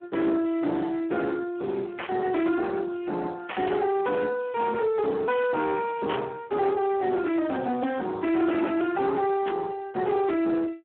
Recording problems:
telephone audio; 220 Hz to 2.8 kHz, Speex
distorted audio; soft clipping, signal-to-distortion ratio 11 dB
static burst; 4 times, first at 2 s; peak -2 dB vs average level

